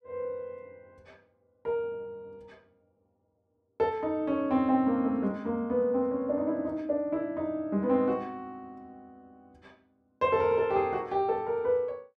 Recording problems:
none

